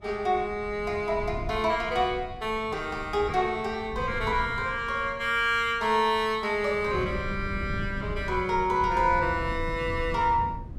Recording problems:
wind noise; below 150 Hz, SNR 12 dB

